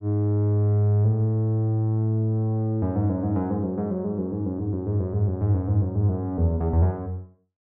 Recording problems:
none

